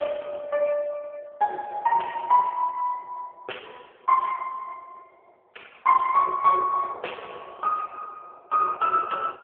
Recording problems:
telephone audio; 340 Hz to 3.2 kHz, AMR-NB

